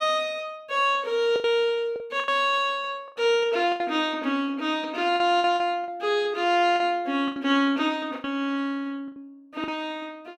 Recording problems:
lost packets; 8% of the sound replaced, filled with the last packet

